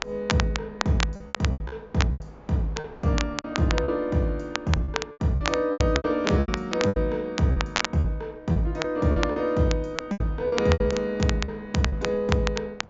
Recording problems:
low-pass filter; nothing above 7.4 kHz
wind noise; below 770 Hz, SNR 23 dB
crackle; vinyl, SNR 7 dB
packet loss; 13% of the sound replaced, filled with repeated pitch periods

